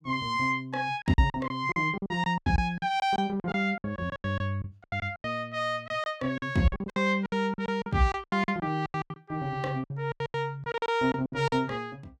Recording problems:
packet loss; 18% of the sound replaced, filled with silence

